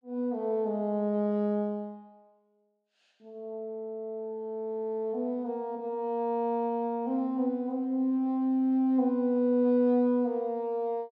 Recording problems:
none

